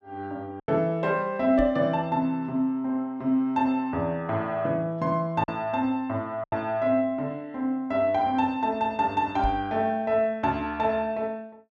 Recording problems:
packet loss; 1.7% of the sound replaced, filled with silence
microphone bump; at 1.5 s and at 9.5 s; peak -1 dB vs average level

